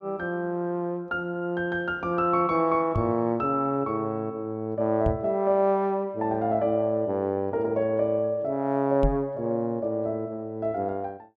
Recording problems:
knock on the microphone; at 3 s, at 5 s and at 9 s; peak +3 dB vs average level

